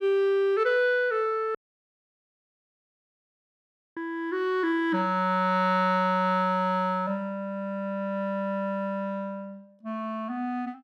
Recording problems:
dropout; at 1.5 s for 2.5 s

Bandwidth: 13.5 kHz